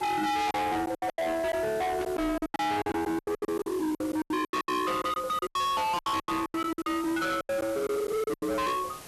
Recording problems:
distortion; hard clipping, signal-to-distortion ratio 6 dB
hiss; slope -3 dB per octave, SNR 17 dB
packet loss; 19% of the sound replaced, filled with silence
burst of static; at 2 s and at 4.5 s; peak -8 dB vs average level

